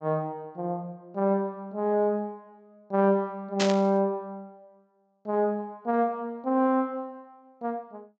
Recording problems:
treble missing; nothing above 8 kHz
burst of static; at 3.5 s; peak +3 dB vs average level

